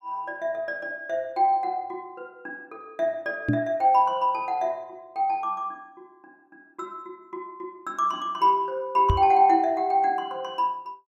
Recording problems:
knock on the microphone; at 3.5 s and at 9 s; peak +5 dB vs average level

